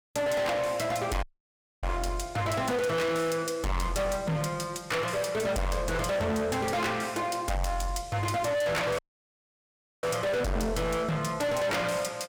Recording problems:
distorted audio; hard clipping, signal-to-distortion ratio 6 dB
audio cutting out; at 1 s for 0.5 s and at 9 s for 1 s

